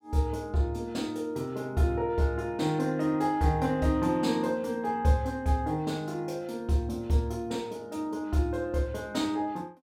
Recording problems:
none

